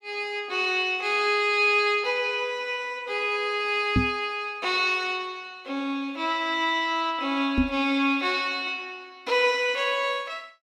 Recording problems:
knock on the microphone; at 4 s and at 7.5 s; peak +6 dB vs average level

